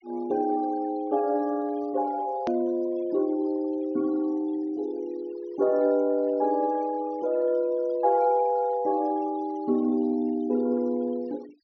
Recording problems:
treble cut off; nothing above 6.2 kHz
noise reduction artefacts; signal-to-artefact ratio 26 dB
edit click; at 2.5 s

